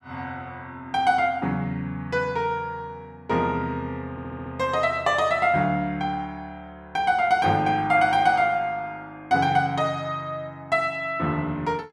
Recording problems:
audio stuttering; at 4 s

